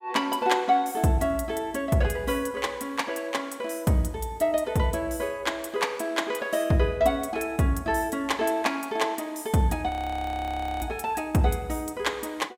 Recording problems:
frozen audio; at 10 s for 1 s

